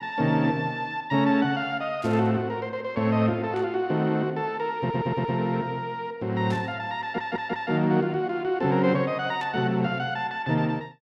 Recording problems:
burst of static; 4 times, first at 2 s; peak -12 dB vs average level
audio stuttering; at 5 s and at 7 s

